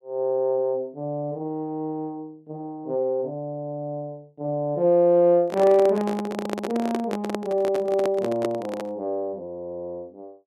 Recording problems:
handling noise; from 5.5 to 9 s; peak 0 dB vs average level

